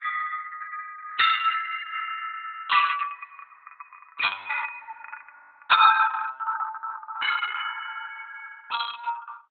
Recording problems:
lossy codec; Opus, log-spectral distance 4 dB, nothing above 3.8 kHz

